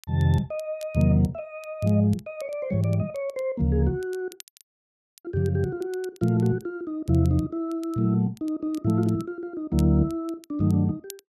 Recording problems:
crackle; vinyl, SNR 27 dB
audio cutting out; at 4.5 s for 1 s

